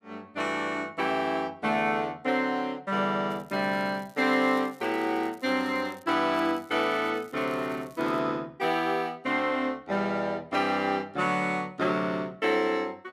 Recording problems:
crackling; from 3.5 to 6 s and from 6.5 to 8 s; loose cable, SNR 28 dB

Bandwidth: 14.5 kHz